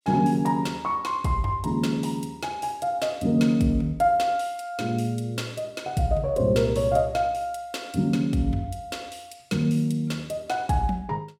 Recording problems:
none

